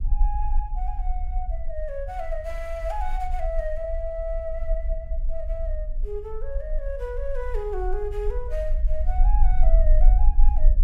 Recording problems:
low-frequency rumble; below 40 Hz, strongest tone 20 Hz, SNR -6 dB

